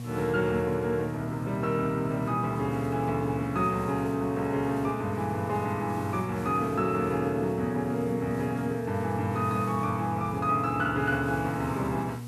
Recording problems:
hum; 60 Hz, harmonics up to 720 Hz, SNR 9 dB
background hiss; slope -2 dB per octave, SNR 23 dB

